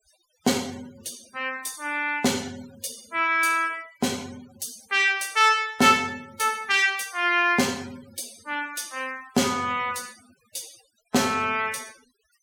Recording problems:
noise reduction artefacts; signal-to-artefact ratio 23 dB

